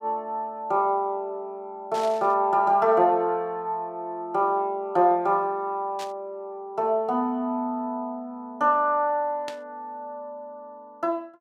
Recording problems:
burst of static; at 2 s, at 6 s and at 9.5 s; peak -8 dB vs average level

